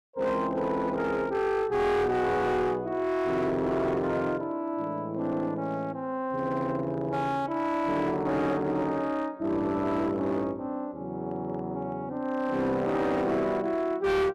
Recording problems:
distortion; hard clipping, signal-to-distortion ratio 10 dB

